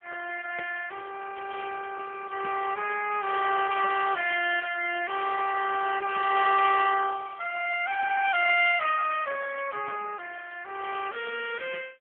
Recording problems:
phone line; 280 Hz to 3.3 kHz, AMR-NB

